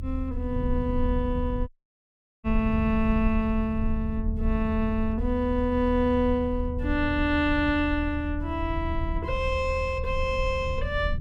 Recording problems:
rumble; below 78 Hz, SNR 5 dB
audio cutting out; at 1.5 s for 1 s

